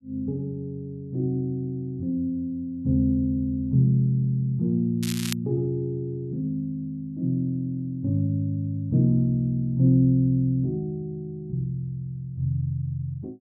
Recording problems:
crackling; at 5 s; loose cable, SNR 9 dB

